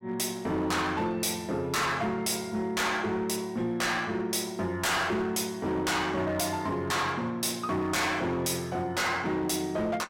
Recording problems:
distorted audio; hard clipping, signal-to-distortion ratio 8 dB

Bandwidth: 16.5 kHz